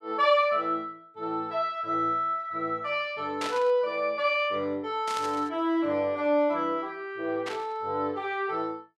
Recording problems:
static burst; at 3.5 s, at 5 s and at 7.5 s; peak -3 dB vs average level

